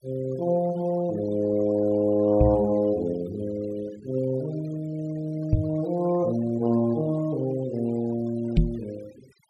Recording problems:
denoising artefacts; signal-to-artefact ratio 21 dB
microphone thump; at 2.5 s, at 5.5 s and at 8.5 s; peak +8 dB vs average level

